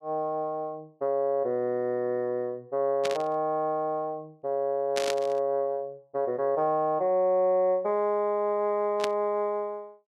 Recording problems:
burst of static; at 3 s, at 5 s and at 9 s; peak 0 dB vs average level

